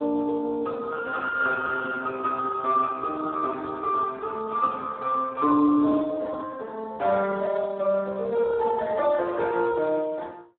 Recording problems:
phone line; 260 Hz to 2.3 kHz, Speex

